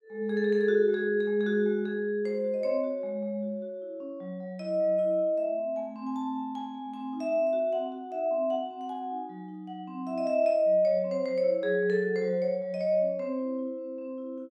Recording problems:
none

